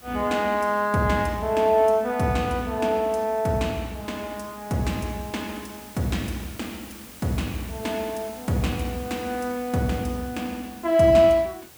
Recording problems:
background hiss; slope -2 dB per octave, SNR 20 dB

